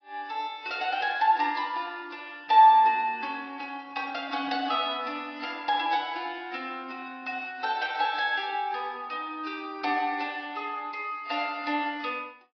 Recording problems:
treble missing; nothing above 5 kHz
lossy codec; AAC, log-spectral distance 3 dB

